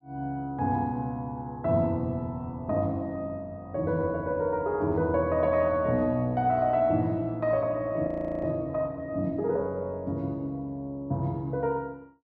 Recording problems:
audio freezing; at 8 s

